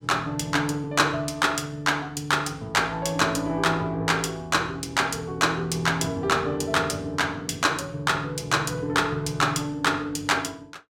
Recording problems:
none

